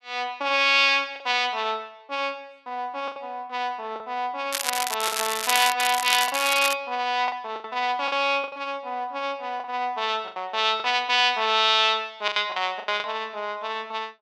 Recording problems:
packet loss; 6% of the sound replaced, filled with the last packet
crackling; from 4.5 to 6.5 s; loose cable, SNR 3 dB

